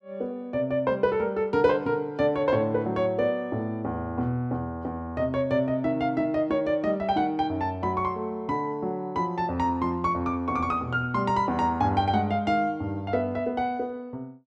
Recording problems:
none

